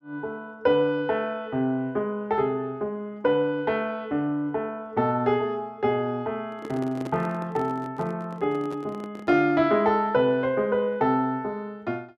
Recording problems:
microphone handling noise; from 6.5 to 9.5 s; peak -5 dB vs average level

